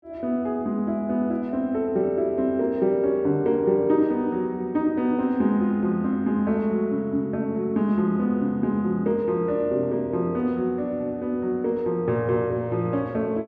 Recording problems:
none

